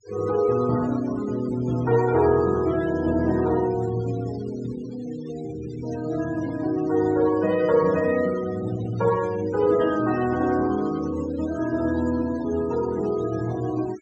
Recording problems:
treble cut off; nothing above 8 kHz
denoising artefacts; signal-to-artefact ratio 18 dB

